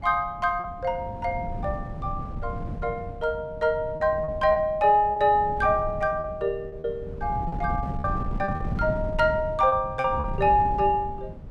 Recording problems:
wind on the microphone; below 180 Hz, SNR 10 dB
lost packets; 5% of the sound replaced, filled with repeated pitch periods

